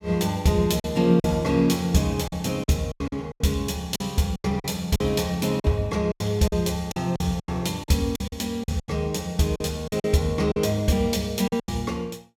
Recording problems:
lost packets; 11% of the sound replaced, filled with silence

